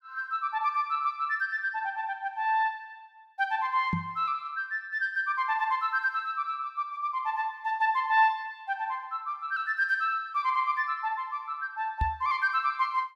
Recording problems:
microphone thump; at 4 s and at 12 s; peak +3 dB vs average level

